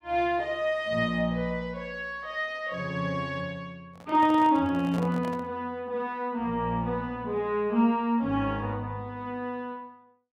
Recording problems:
handling noise; from 4 to 5.5 s; peak -7 dB vs average level

